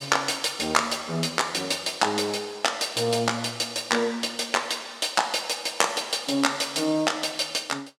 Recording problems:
none

